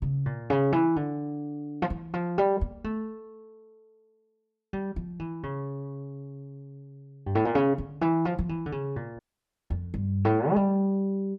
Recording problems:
dropout; at 9 s for 0.5 s

